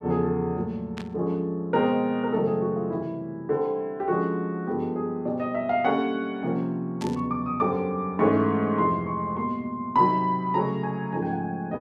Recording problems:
static burst; at 1 s and at 7 s; peak -9 dB vs average level

